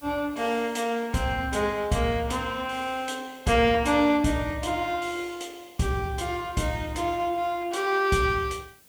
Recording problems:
background hiss; SNR 27 dB

